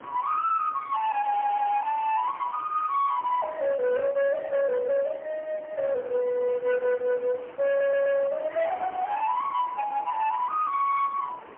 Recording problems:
phone line; 690 Hz to 3.3 kHz, AMR-NB, then MP3
distortion; hard clipping, uneven, signal-to-distortion ratio 10 dB
wind on the microphone; below 1.5 kHz, SNR 20 dB
crackle; from 1 to 3 s; loose cable, SNR 27 dB
audio stuttering; at 1.5 s and at 7.5 s

